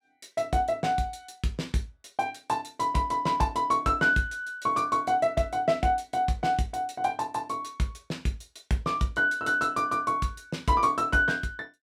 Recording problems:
none

